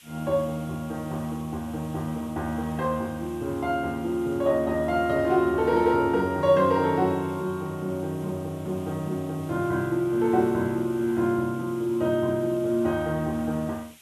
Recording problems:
hiss; SNR 24 dB

